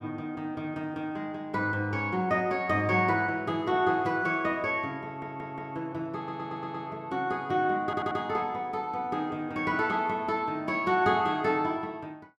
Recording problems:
stutter; at 5 s, at 6 s and at 8 s

